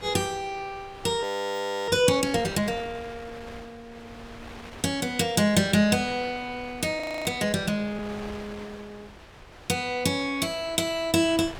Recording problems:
wind on the microphone; below 2.2 kHz, SNR 19 dB
audio freezing; at 1 s for 0.5 s and at 7 s

